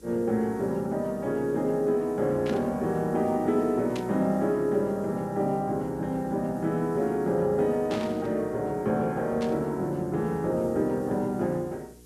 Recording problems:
hum; 60 Hz, harmonics up to 480 Hz, SNR 26 dB
background hiss; SNR 28 dB
static burst; 4 times, first at 2.5 s; peak -7 dB vs average level

